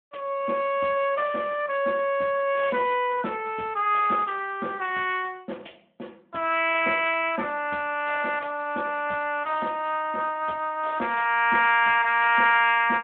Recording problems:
phone line; 260 Hz to 3.2 kHz, Speex

